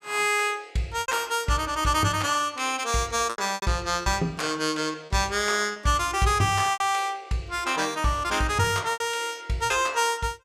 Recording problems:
packet loss; 6% of the sound replaced, filled with repeated pitch periods

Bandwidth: 15.5 kHz